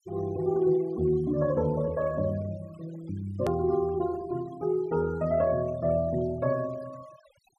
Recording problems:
denoising artefacts; signal-to-artefact ratio 21 dB
hard cut with a click; at 3.5 s

